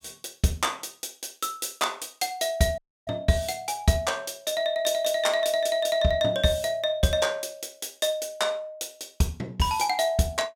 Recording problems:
audio cutting out; at 3 s

